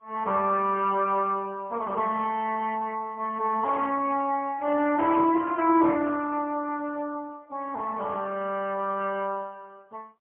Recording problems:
phone line; 220 Hz to 3.1 kHz, AMR-NB, then MP3

